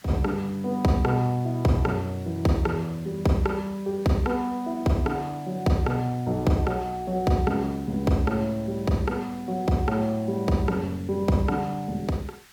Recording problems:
background hiss; SNR 25 dB

